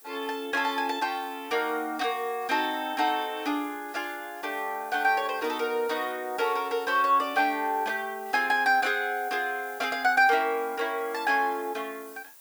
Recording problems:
hiss; SNR 20 dB

